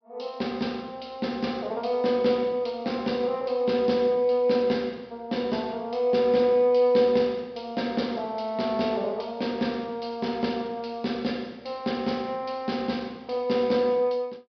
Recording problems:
treble missing; nothing above 5.5 kHz

